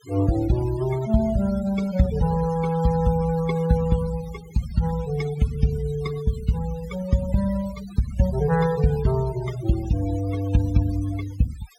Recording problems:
noise reduction artefacts; signal-to-artefact ratio 17 dB

